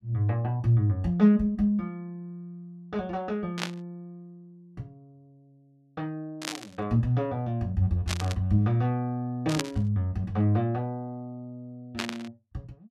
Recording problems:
static burst; 5 times, first at 3.5 s; peak +2 dB vs average level

